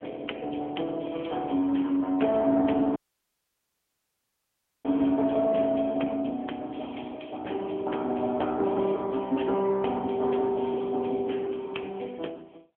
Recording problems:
phone line; 190 Hz to 3.3 kHz, AMR-NB
dropout; at 3 s for 2 s

